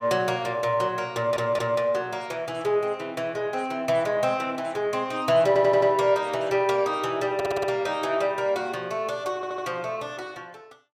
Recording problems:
audio stuttering; 4 times, first at 1 s

